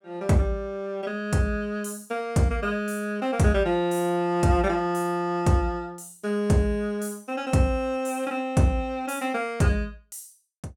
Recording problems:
none

